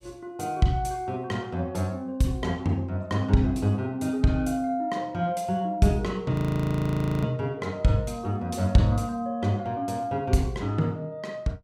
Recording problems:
frozen audio; at 6.5 s for 1 s

